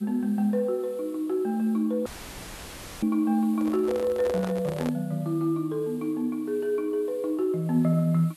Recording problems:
background hiss; SNR 27 dB
audio cutting out; at 2 s for 1 s; filled with static
microphone handling noise; from 3.5 to 5 s; peak -3 dB vs average level

